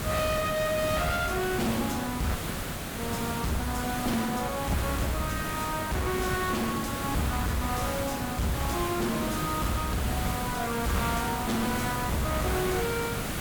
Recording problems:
distorted audio; hard clipping, uneven, signal-to-distortion ratio 6 dB
background hiss; slope -4 dB per octave, SNR 2 dB
dropout; at 2.5 s for 0.5 s

